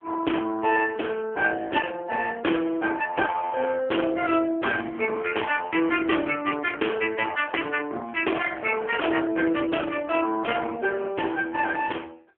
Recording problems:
telephone audio; 260 Hz to 3.2 kHz, AMR-NB

